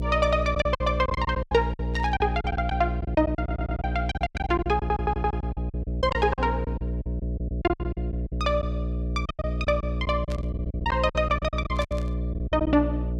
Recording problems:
hum; 60 Hz, harmonics up to 660 Hz, SNR 3 dB
packet loss; 16% of the sound replaced, filled with silence
static burst; at 2 s, at 10 s and at 12 s; peak -10 dB vs average level
audio stuttering; at 3.5 s and at 4.5 s

